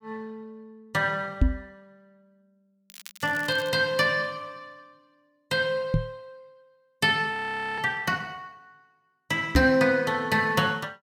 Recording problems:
knock on the microphone; at 1.5 s, at 6 s and at 9.5 s; peak +7 dB vs average level
crackle; at 3 s; loose cable, SNR 20 dB
frozen audio; at 7.5 s

